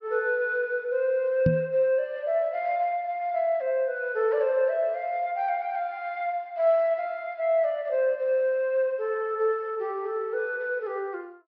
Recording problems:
treble missing; nothing above 5.7 kHz
knock on the microphone; at 1.5 s; peak +6 dB vs average level

